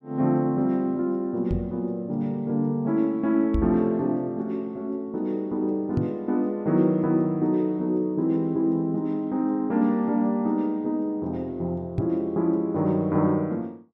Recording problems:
microphone bump; 4 times, first at 1.5 s; peak +3 dB vs average level

